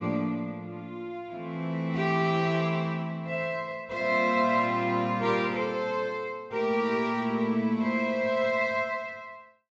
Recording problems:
treble cut off; nothing above 8 kHz

